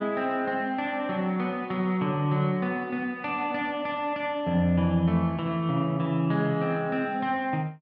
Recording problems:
none

